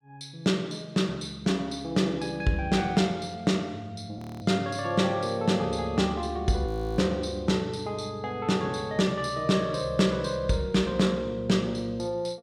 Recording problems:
audio freezing; at 4 s and at 6.5 s

